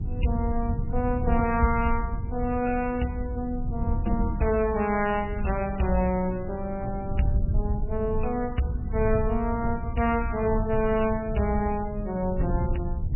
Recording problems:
lossy compression; MP3, log-spectral distance 2 dB, nothing above 2.9 kHz
hum; 50 Hz, harmonics up to 850 Hz, SNR 21 dB
rumble; below 98 Hz, SNR 5 dB

